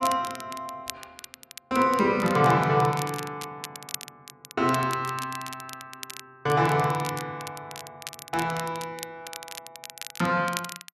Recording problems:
crackle; vinyl, SNR 14 dB

